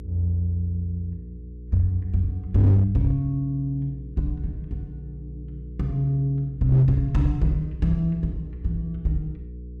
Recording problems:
distortion; hard clipping, signal-to-distortion ratio 12 dB
hum; 60 Hz, harmonics up to 480 Hz, SNR 15 dB

